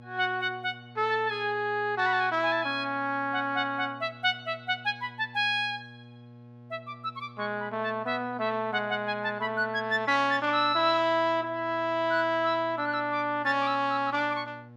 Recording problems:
hum; 60 Hz, harmonics up to 1.3 kHz, SNR 21 dB

